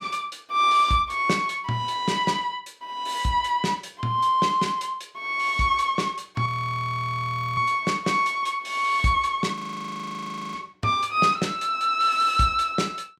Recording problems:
audio freezing; at 6.5 s for 1 s and at 9.5 s for 1 s

